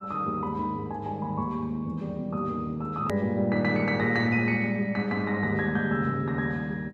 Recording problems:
click at an edit; at 3 s

